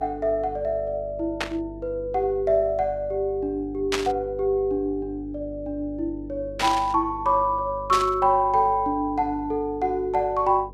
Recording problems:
hum; 50 Hz, harmonics up to 500 Hz, SNR 18 dB
static burst; 4 times, first at 1.5 s; peak +3 dB vs average level

